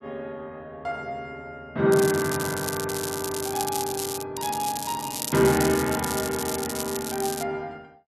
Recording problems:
crackle; from 2 to 4 s and from 4.5 to 7.5 s; loose cable, SNR 5 dB

